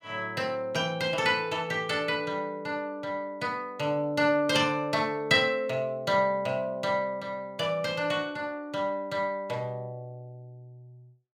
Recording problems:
none

